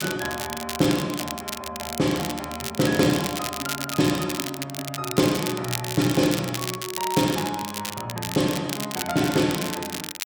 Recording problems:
crackle; vinyl, SNR 6 dB

